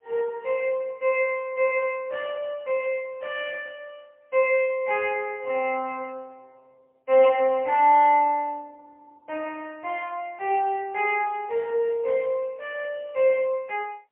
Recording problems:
telephone audio; 320 Hz to 3.1 kHz, AMR-NB, then MP3

